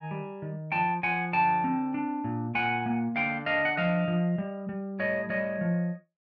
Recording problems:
none

